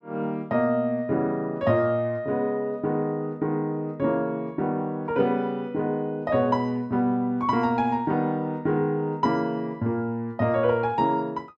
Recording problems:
none

